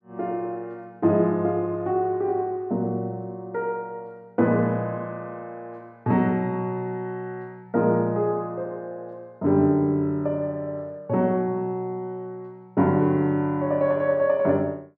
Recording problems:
none

